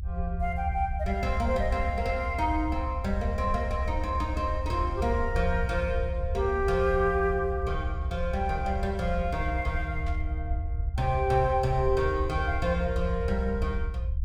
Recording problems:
rumble; below 76 Hz, SNR 3 dB
burst of static; at 10 s; peak -14 dB vs average level

